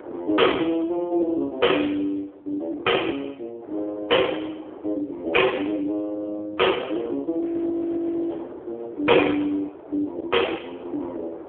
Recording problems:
telephone audio; 260 Hz to 3.3 kHz, AMR-NB
distortion; hard clipping, signal-to-distortion ratio 12 dB
wind on the microphone; below 700 Hz, SNR 19 dB
audio freezing; at 7.5 s for 1 s

